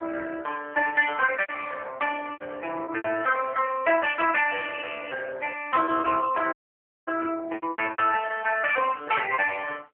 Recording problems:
phone line; 300 Hz to 3.2 kHz, AMR-NB
packet loss; 8% of the sound replaced, filled with repeated pitch periods
dropout; at 6.5 s for 0.5 s

